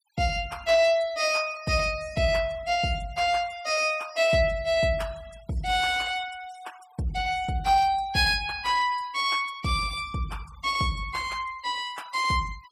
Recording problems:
noise reduction artefacts; signal-to-artefact ratio 23 dB

